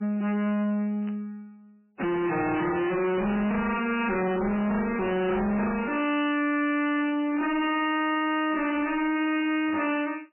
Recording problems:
lossy compression; MP3, log-spectral distance 4 dB, nothing above 2.9 kHz
distorted audio; soft clipping, signal-to-distortion ratio 6 dB
burst of static; 4 times, first at 1 s; peak -15 dB vs average level

